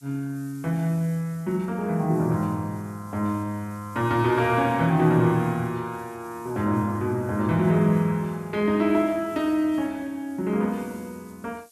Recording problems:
background hiss; SNR 27 dB

